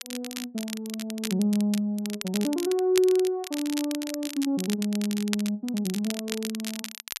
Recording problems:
crackling; vinyl, SNR 9 dB

